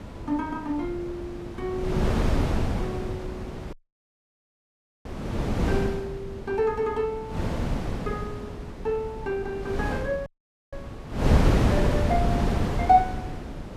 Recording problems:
wind on the microphone; below 370 Hz, SNR -1 dB
audio cutting out; at 3.5 s for 1.5 s and at 10 s

